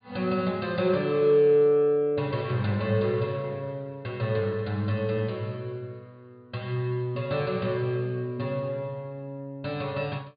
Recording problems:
treble cut off; nothing above 4.7 kHz

